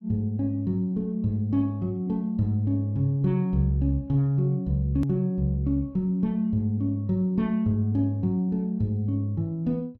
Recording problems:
click at an edit; at 5 s

